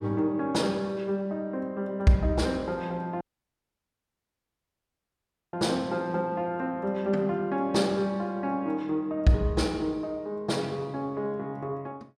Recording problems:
audio cutting out; at 3 s for 2.5 s

